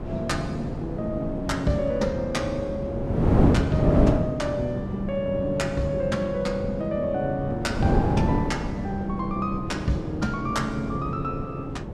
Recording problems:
wind noise; below 360 Hz, SNR 0 dB

